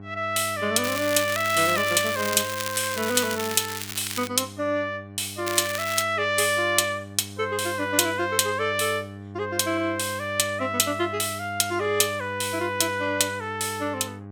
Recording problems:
hum; 50 Hz, harmonics up to 1.2 kHz, SNR 16 dB
crackle; from 1 to 4.5 s and at 5.5 s; loose cable, SNR 8 dB

